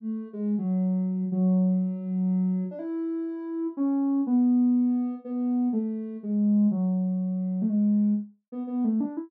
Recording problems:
none

